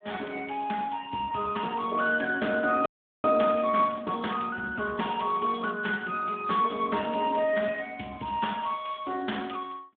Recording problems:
telephone audio; 130 Hz to 3.4 kHz, Speex
audio freezing; at 3 s

